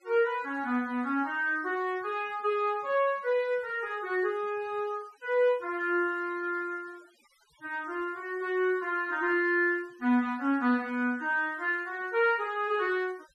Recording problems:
noise reduction artefacts; signal-to-artefact ratio 27 dB

